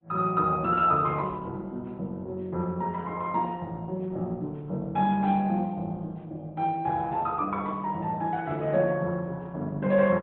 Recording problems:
low-pass filter; nothing above 4 kHz
codec artefacts; Opus, log-spectral distance 2 dB

